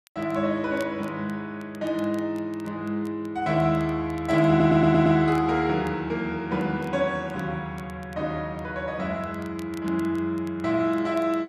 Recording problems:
crackle; vinyl, SNR 28 dB
audio stuttering; at 4.5 s

